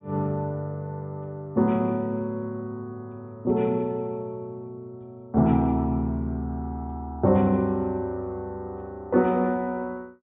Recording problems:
treble cut off; nothing above 4 kHz

